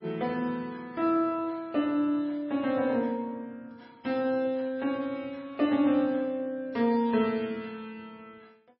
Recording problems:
codec artefacts; MP3, log-spectral distance 2 dB, nothing above 4.6 kHz

